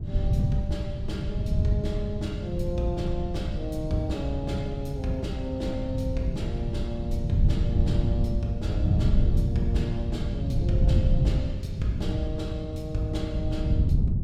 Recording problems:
wind on the microphone; below 130 Hz, SNR -4 dB

